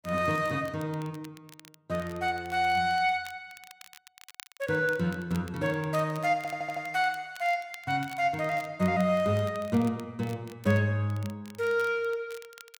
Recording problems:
crackle; vinyl, SNR 22 dB
audio stuttering; at 6.5 s

